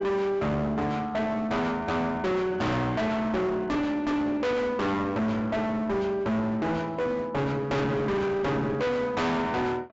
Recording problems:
treble missing; nothing above 8 kHz
distorted audio; hard clipping, uneven, signal-to-distortion ratio 5 dB

